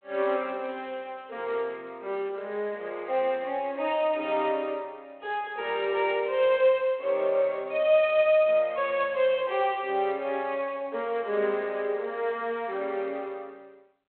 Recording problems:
phone line; 320 Hz to 3.6 kHz, G.726

